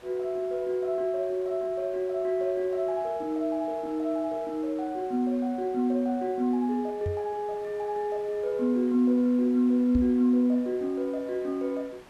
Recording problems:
hiss; slope -5 dB per octave, SNR 24 dB
microphone thump; at 7 s and at 10 s; peak 0 dB vs average level

